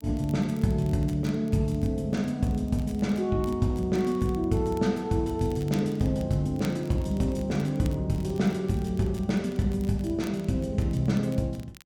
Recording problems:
crackle; vinyl, SNR 26 dB

